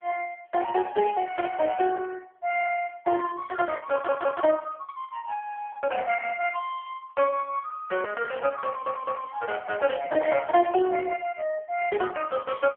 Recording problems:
phone line; 320 Hz to 2.9 kHz, AMR-NB
lost packets; 2% of the sound replaced, filled with the last packet
audio stuttering; at 4 s and at 8.5 s

